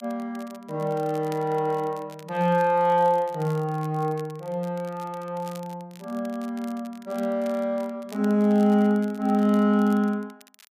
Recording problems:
crackling; vinyl, SNR 26 dB

